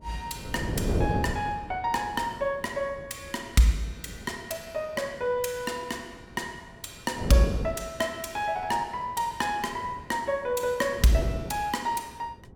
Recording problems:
wind on the microphone; below 400 Hz, SNR 5 dB

